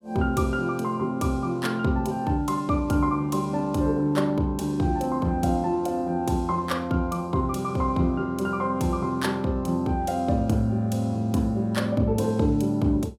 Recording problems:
none

